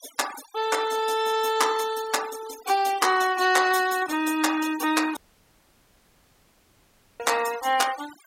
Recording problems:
denoising artefacts; signal-to-artefact ratio 14 dB
dropout; at 5 s for 2 s

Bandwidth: 16 kHz